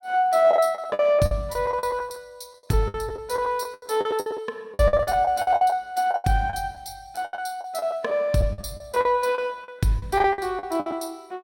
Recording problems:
packet loss; 17% of the sound replaced, filled with the last packet

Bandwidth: 16.5 kHz